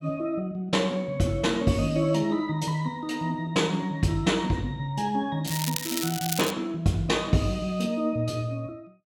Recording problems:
crackling; from 5.5 to 6.5 s; loose cable, SNR 4 dB

